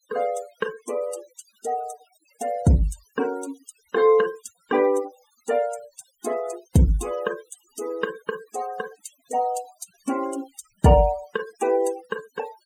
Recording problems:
noise reduction artefacts; signal-to-artefact ratio 20 dB

